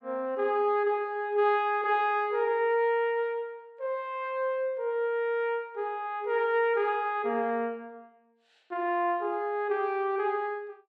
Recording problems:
none

